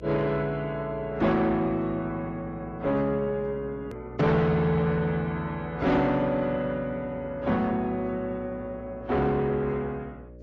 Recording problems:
lossy codec; AAC, then AAC, log-spectral distance 2 dB
distorted audio; soft clipping, signal-to-distortion ratio 10 dB
hum; 60 Hz, harmonics up to 600 Hz, SNR 18 dB
click at an edit; at 4 s

